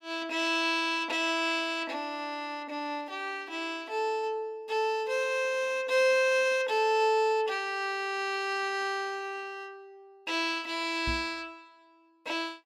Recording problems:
microphone bump; at 11 s; peak -3 dB vs average level

